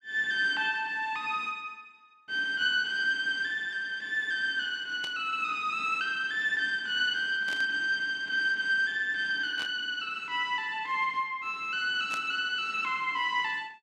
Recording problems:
burst of static; 4 times, first at 5 s; peak -7 dB vs average level

